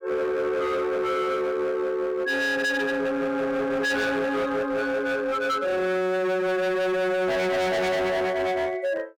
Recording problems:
distorted audio; hard clipping, signal-to-distortion ratio 7 dB

